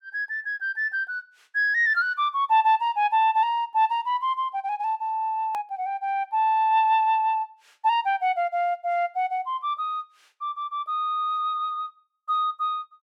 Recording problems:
edit click; at 5.5 s

